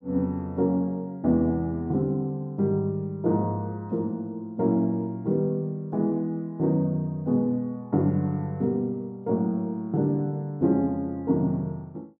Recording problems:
none

